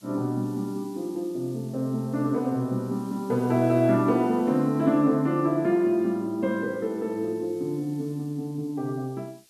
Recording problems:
hiss; SNR 28 dB

